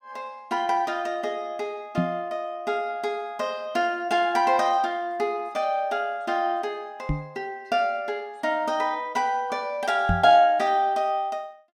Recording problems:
knock on the microphone; at 2 s, at 7 s and at 10 s; peak +4 dB vs average level

